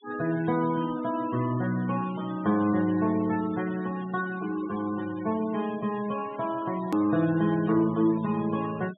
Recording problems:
low-pass filter; nothing above 3.8 kHz
denoising artefacts; signal-to-artefact ratio 18 dB
hard cut with a click; at 7 s

